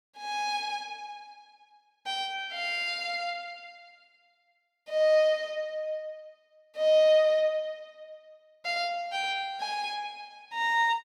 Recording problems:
none

